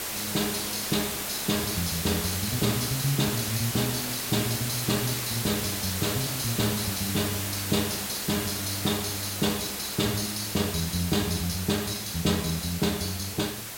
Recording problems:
background hiss; slope -1 dB per octave, SNR 2 dB

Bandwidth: 16.5 kHz